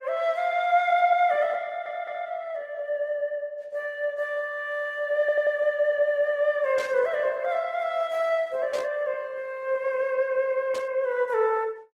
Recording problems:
codec artefacts; Opus, log-spectral distance 2 dB
audio stuttering; at 1.5 s and at 5 s
burst of static; at 7 s, at 8.5 s and at 11 s; peak -9 dB vs average level

